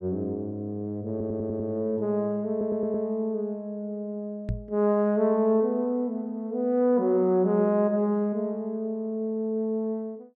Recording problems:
stutter; at 1 s and at 2.5 s
microphone bump; at 4.5 s; peak +1 dB vs average level

